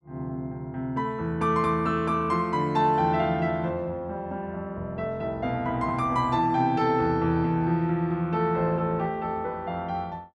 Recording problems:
none

